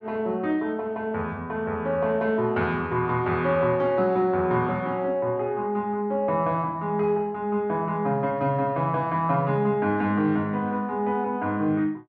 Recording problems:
none

